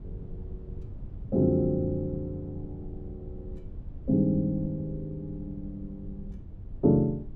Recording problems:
rumble; below 110 Hz, SNR 15 dB

